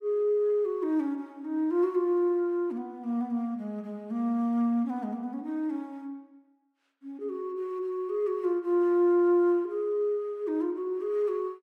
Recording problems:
none

